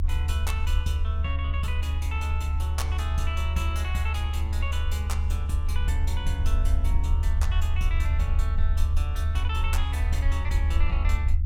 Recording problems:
low-frequency rumble; below 76 Hz, SNR -8 dB

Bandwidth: 17 kHz